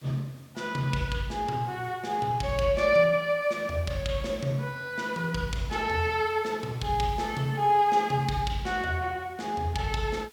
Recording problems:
hiss; slope 0 dB per octave, SNR 27 dB

